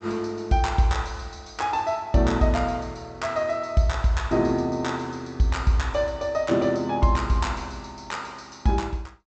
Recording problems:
low-pass filter; nothing above 8 kHz

